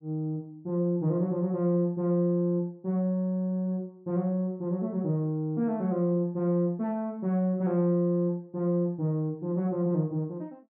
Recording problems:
none

